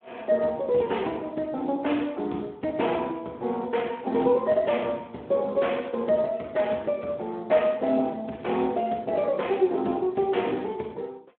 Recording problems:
telephone audio; 190 Hz to 3.6 kHz, Speex

